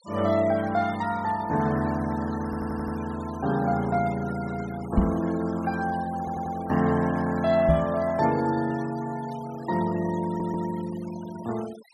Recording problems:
denoising artefacts; signal-to-artefact ratio 18 dB
stutter; at 2.5 s, at 6 s and at 10 s
microphone thump; at 5 s and at 7.5 s; peak +7 dB vs average level

